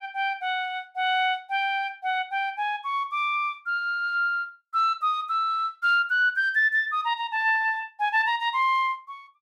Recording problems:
none

